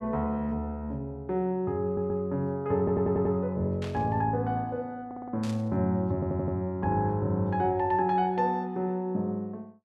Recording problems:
stutter; 4 times, first at 2 s
burst of static; at 4 s and at 5.5 s; peak -10 dB vs average level

